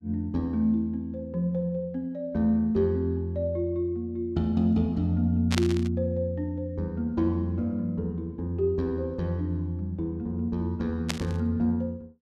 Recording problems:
static burst; at 5.5 s and at 11 s; peak +3 dB vs average level

